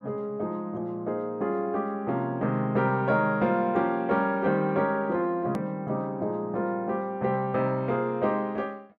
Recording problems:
click at an edit; at 5.5 s

